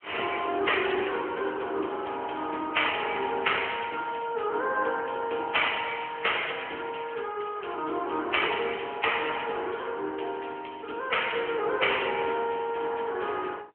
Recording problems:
telephone audio; 320 Hz to 3.2 kHz, AMR-NB

